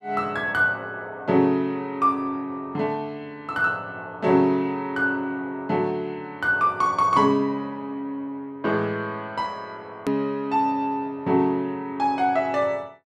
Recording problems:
click at an edit; at 10 s

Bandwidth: 13 kHz